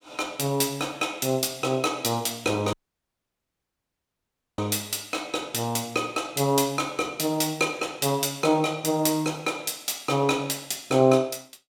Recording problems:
dropout; at 2.5 s for 2 s

